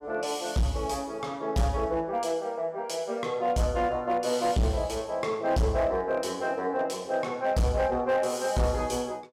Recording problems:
distortion; hard clipping, uneven, signal-to-distortion ratio 11 dB

